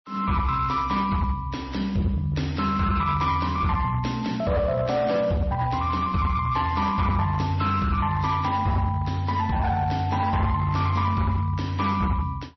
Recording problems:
lossy compression; MP3, then MP3, log-spectral distance 3 dB, nothing above 5.8 kHz
distorted audio; hard clipping, uneven, signal-to-distortion ratio 11 dB

